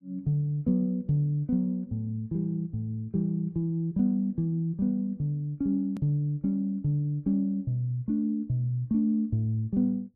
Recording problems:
hard cut with a click; at 6 s

